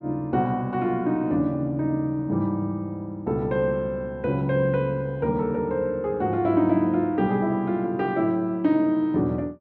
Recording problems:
none

